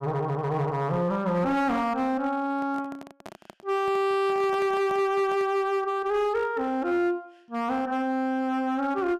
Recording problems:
distorted audio; hard clipping, signal-to-distortion ratio 11 dB
microphone handling noise; from 2.5 to 5.5 s; peak -10 dB vs average level

